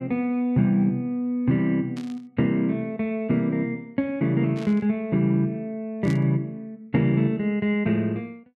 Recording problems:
burst of static; at 2 s, at 4.5 s and at 6 s; peak -12 dB vs average level

